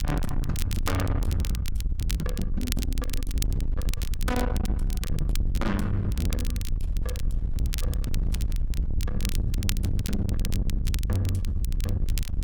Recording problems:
distortion; soft clipping, signal-to-distortion ratio 7 dB
rumble; below 80 Hz, SNR 0 dB
wind on the microphone; below 210 Hz, SNR 18 dB
crackle; vinyl, SNR 11 dB

